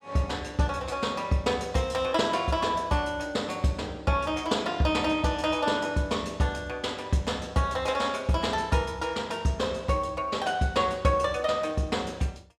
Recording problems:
none

